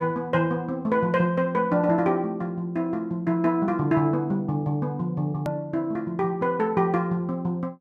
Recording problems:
edit click; at 5.5 s

